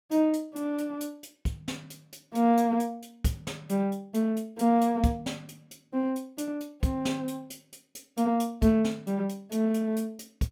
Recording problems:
none

